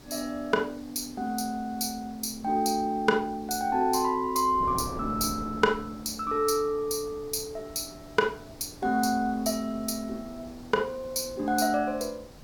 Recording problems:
hiss; slope -1 dB per octave, SNR 26 dB
wind noise; below 530 Hz, SNR 18 dB

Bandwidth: 18 kHz